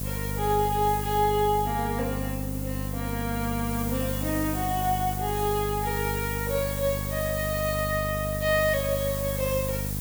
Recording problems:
hum; 50 Hz, harmonics up to 750 Hz, SNR 5 dB
background hiss; SNR 7 dB

